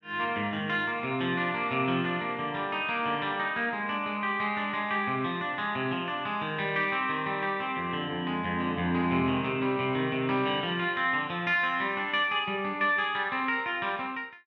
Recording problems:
none

